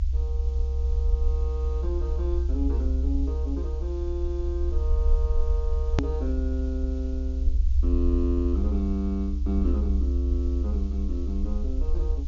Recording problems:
treble cut off; nothing above 7.1 kHz
background hiss; SNR 25 dB
rumble; below 66 Hz, strongest tone 66 Hz, SNR -6 dB
hard cut with a click; at 6 s

